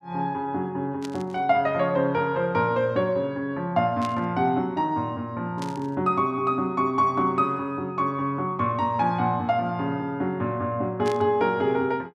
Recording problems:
burst of static; 4 times, first at 1 s; peak -8 dB vs average level

